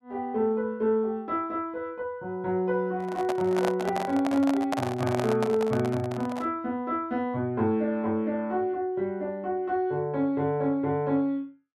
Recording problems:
handling noise; from 3 to 6.5 s; peak +2 dB vs average level

